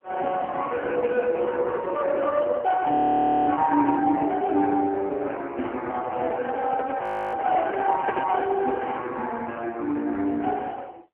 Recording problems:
telephone audio; 260 Hz to 3 kHz, AMR-NB
audio freezing; at 3 s for 0.5 s and at 7 s
handling noise; from 6 to 8.5 s; peak +2 dB vs average level

